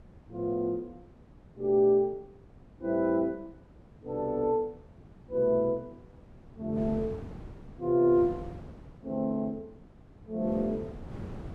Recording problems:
wind on the microphone; below 320 Hz, SNR 19 dB

